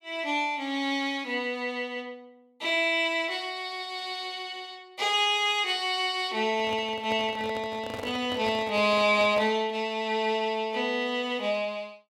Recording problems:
microphone handling noise; from 6.5 to 9.5 s; peak -7 dB vs average level

